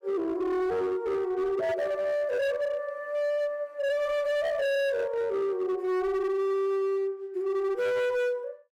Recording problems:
distorted audio; hard clipping, signal-to-distortion ratio 7 dB

